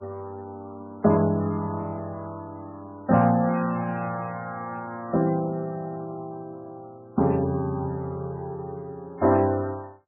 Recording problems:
lossy codec; MP3, log-spectral distance 2 dB, nothing above 2.5 kHz

